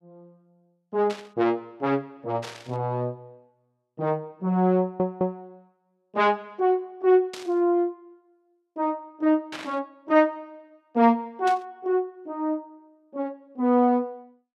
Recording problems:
burst of static; 5 times, first at 1 s; peak -7 dB vs average level
stutter; at 5 s

